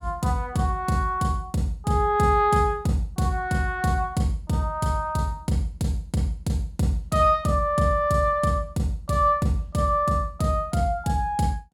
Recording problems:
none

